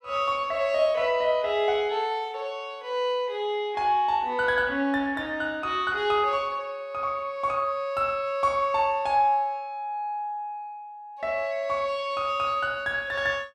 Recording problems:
none

